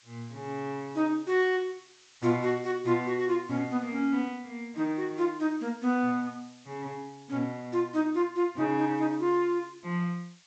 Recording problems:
treble cut off; nothing above 8 kHz
background hiss; slope +3 dB per octave, SNR 27 dB

